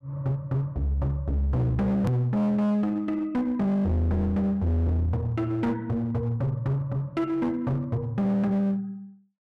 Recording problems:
distorted audio; hard clipping, uneven, signal-to-distortion ratio 7 dB
edit click; at 2 s

